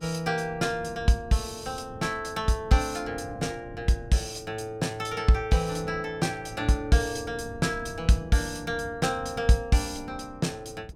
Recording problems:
wind on the microphone; below 210 Hz, SNR 18 dB

